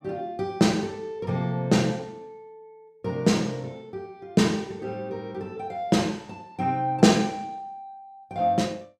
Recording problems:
none

